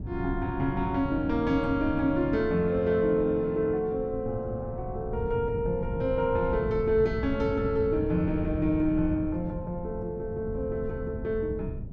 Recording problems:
wind on the microphone; below 160 Hz, SNR 9 dB

